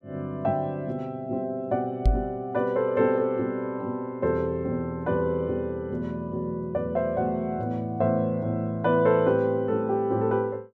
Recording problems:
microphone thump; at 2 s; peak +7 dB vs average level

